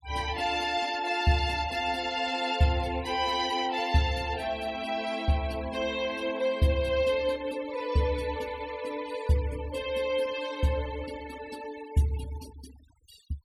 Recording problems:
denoising artefacts; signal-to-artefact ratio 18 dB

